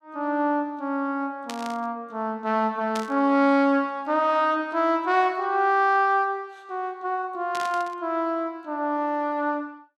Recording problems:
burst of static; at 1.5 s, at 3 s and at 7.5 s; peak -6 dB vs average level

